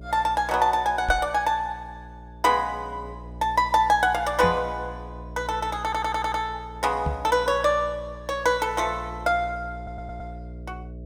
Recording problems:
electrical hum; 60 Hz, harmonics up to 660 Hz, SNR 16 dB
knock on the microphone; at 1 s, at 4.5 s and at 7 s; peak 0 dB vs average level
audio stuttering; at 6 s and at 10 s

